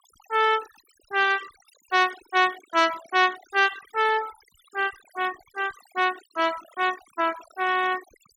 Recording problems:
denoising artefacts; signal-to-artefact ratio 16 dB

